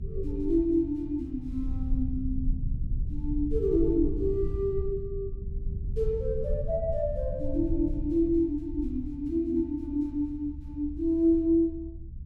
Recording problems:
low-frequency rumble; below 72 Hz, SNR 7 dB

